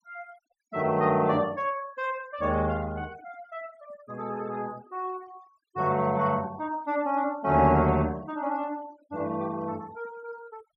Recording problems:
noise reduction artefacts; signal-to-artefact ratio 25 dB

